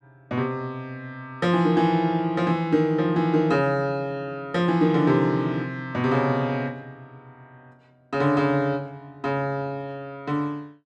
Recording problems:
none

